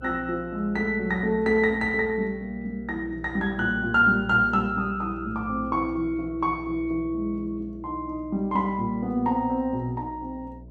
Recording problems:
hum; 60 Hz, harmonics up to 660 Hz, SNR 18 dB

